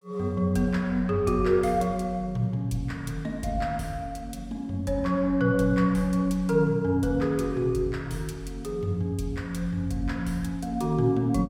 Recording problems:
none

